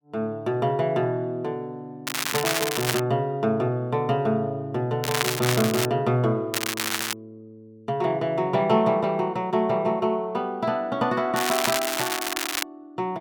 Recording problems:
crackle; 4 times, first at 2 s; loose cable, SNR 2 dB

